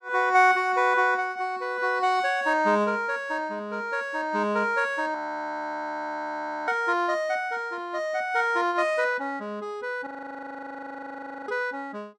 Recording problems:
audio freezing; at 5 s for 1.5 s and at 10 s for 1.5 s

